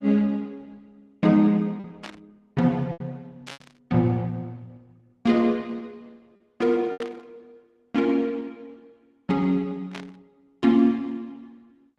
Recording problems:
lossy compression; Opus, log-spectral distance 2 dB, nothing above 11 kHz
packet loss; 3% of the sound replaced, filled with repeated pitch periods
static burst; 4 times, first at 2 s; peak -10 dB vs average level

